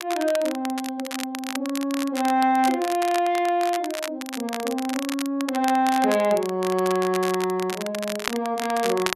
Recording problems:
crackle; vinyl, SNR 10 dB

